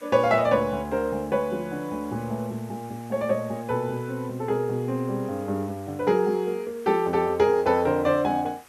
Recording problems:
hiss; SNR 25 dB

